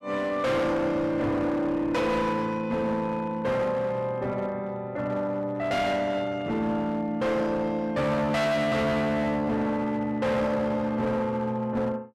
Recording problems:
distorted audio; hard clipping, uneven, signal-to-distortion ratio 8 dB

